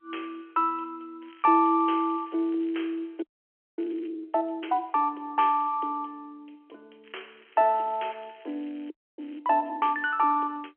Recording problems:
phone line; 280 Hz to 3.3 kHz, G.711
crackle; from 1 to 3 s, at 3 s and from 7 to 9.5 s; loose cable, SNR 30 dB
audio freezing; at 3 s for 0.5 s and at 9 s

